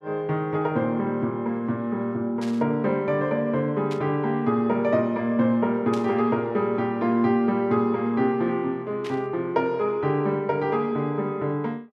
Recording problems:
static burst; 4 times, first at 2.5 s; peak -10 dB vs average level

